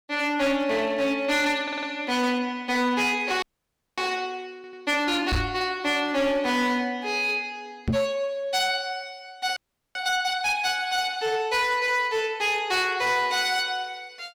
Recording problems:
distortion; hard clipping, signal-to-distortion ratio 11 dB
audio stuttering; at 1.5 s and at 4.5 s
frozen audio; at 3.5 s for 0.5 s and at 9.5 s
knock on the microphone; at 5.5 s and at 8 s; peak +3 dB vs average level

